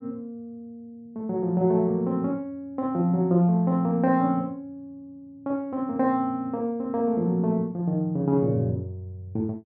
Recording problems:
none

